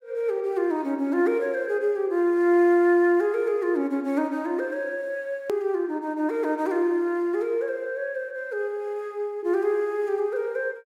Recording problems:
edit click; at 5.5 s

